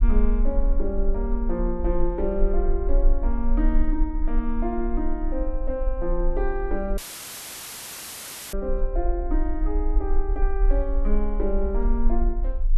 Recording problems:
rumble; below 38 Hz, strongest tone 20 Hz, SNR -1 dB
dropout; at 7 s for 1.5 s; filled with static

